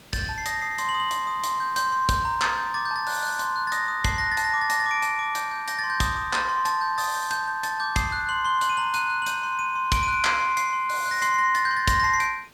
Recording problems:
background hiss; slope -3 dB per octave, SNR 28 dB

